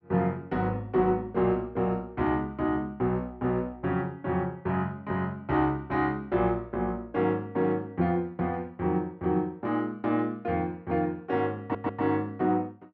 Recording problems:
stutter; at 12 s

